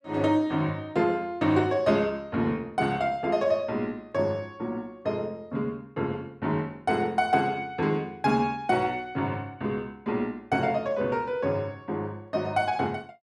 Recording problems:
none

